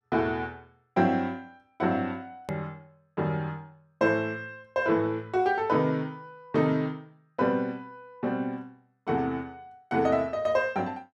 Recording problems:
edit click; at 2.5 s

